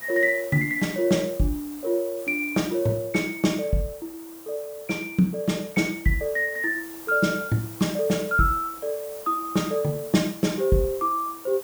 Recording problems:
hiss; SNR 16 dB

